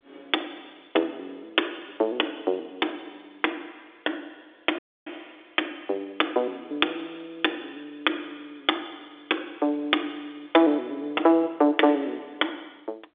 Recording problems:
telephone audio; 260 Hz to 3.6 kHz, G.711
audio cutting out; at 5 s

